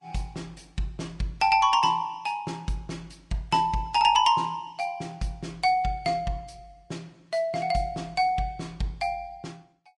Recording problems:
lossy codec; Vorbis, log-spectral distance 2 dB, nothing above 10.7 kHz

